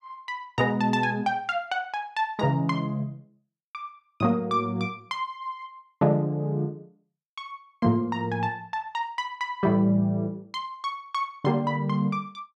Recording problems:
none

